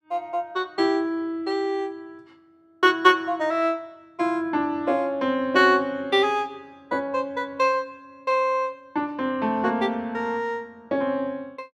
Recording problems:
none

